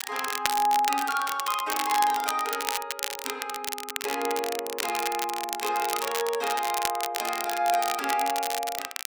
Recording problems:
crackle; vinyl, SNR 4 dB

